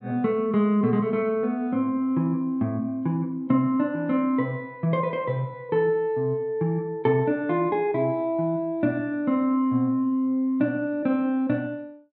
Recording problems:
none

